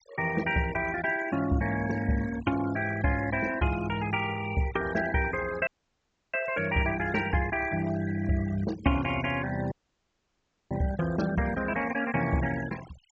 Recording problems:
treble missing; nothing above 8 kHz
noise reduction artefacts; signal-to-artefact ratio 14 dB
dropout; at 5.5 s for 0.5 s and at 9.5 s for 1 s

